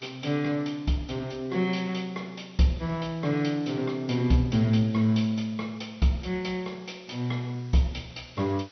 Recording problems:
lossy codec; MP2, log-spectral distance 6 dB, nothing above 6 kHz
background hiss; slope 0 dB per octave, SNR 27 dB

